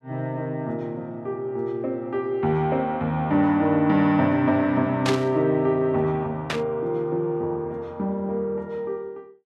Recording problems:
static burst; at 5 s and at 6.5 s; peak +1 dB vs average level

